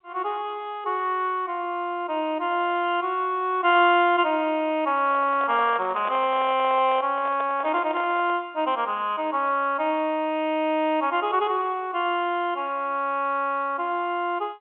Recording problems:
phone line; 320 Hz to 3.7 kHz, G.711
handling noise; from 5 to 8.5 s; peak -7 dB vs average level

